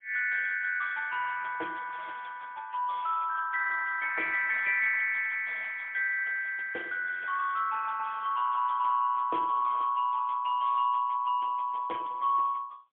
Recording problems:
phone line; 260 Hz to 3.4 kHz, AMR-NB, then MP3

